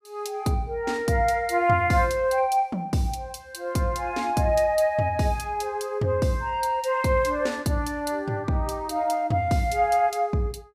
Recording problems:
none

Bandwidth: 15 kHz